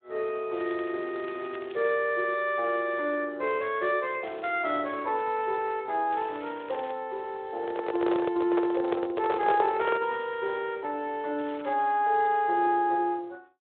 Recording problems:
telephone audio; 300 Hz to 3.6 kHz, Speex
crackling; 4 times, first at 0.5 s; loose cable, SNR 22 dB
microphone handling noise; from 7.5 to 10 s; peak +2 dB vs average level

